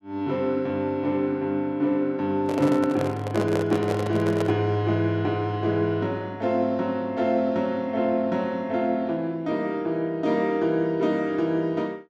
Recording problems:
microphone handling noise; from 2.5 to 4.5 s; peak 0 dB vs average level

